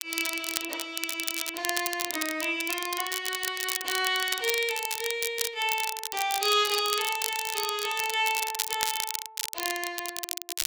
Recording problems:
crackle; vinyl, SNR 3 dB

